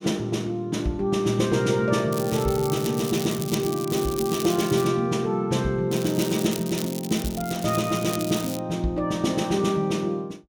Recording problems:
crackling; from 2 to 5 s and from 6 to 8.5 s; loose cable, SNR 11 dB

